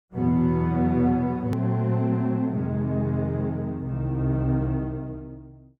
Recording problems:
edit click; at 1.5 s

